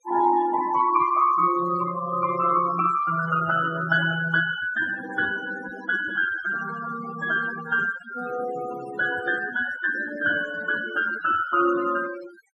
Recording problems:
denoising artefacts; signal-to-artefact ratio 12 dB

